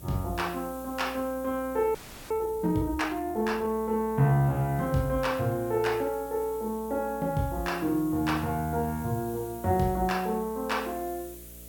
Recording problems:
hum; 60 Hz, harmonics up to 660 Hz, SNR 22 dB
background hiss; slope +1 dB per octave, SNR 18 dB
audio freezing; at 2 s

